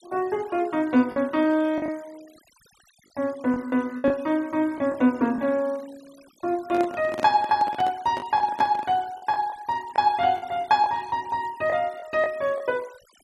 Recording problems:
denoising artefacts; signal-to-artefact ratio 25 dB
packet loss; 5% of the sound replaced, filled with the last packet
microphone handling noise; from 6.5 to 9 s; peak -5 dB vs average level

